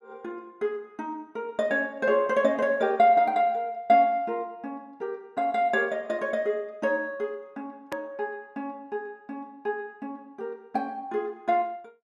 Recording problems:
click at an edit; at 8 s

